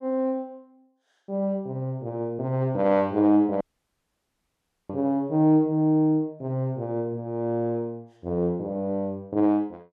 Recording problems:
dropout; at 3.5 s for 1.5 s

